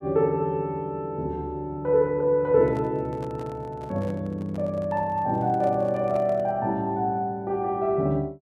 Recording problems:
microphone handling noise; from 2.5 to 6.5 s; peak -11 dB vs average level

